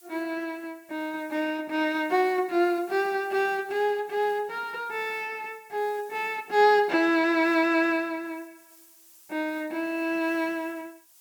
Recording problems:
hiss; SNR 27 dB

